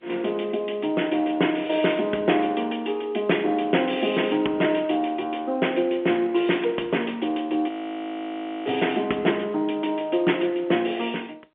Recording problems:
phone line; 240 Hz to 3.4 kHz, G.711
frozen audio; at 7.5 s for 1 s

